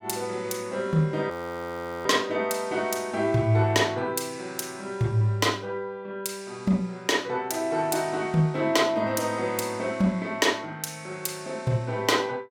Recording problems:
frozen audio; at 1.5 s for 0.5 s

